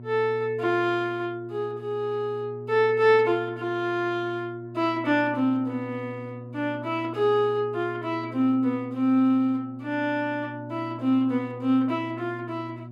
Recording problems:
hum; 60 Hz, harmonics up to 720 Hz, SNR 15 dB

